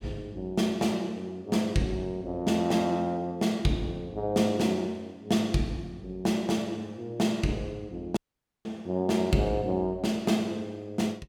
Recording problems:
dropout; at 8 s

